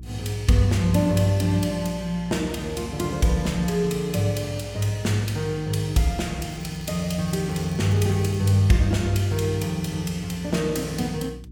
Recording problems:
hum; 60 Hz, harmonics up to 360 Hz, SNR 18 dB
crackling; from 6.5 to 8.5 s; loose cable, SNR 26 dB

